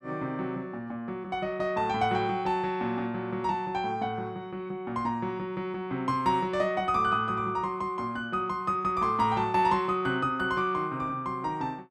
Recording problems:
none

